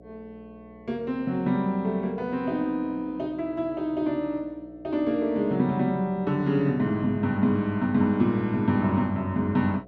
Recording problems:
hum; 60 Hz, harmonics up to 720 Hz, SNR 24 dB

